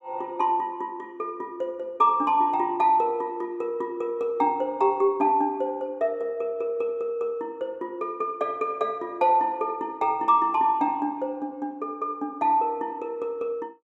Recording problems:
none

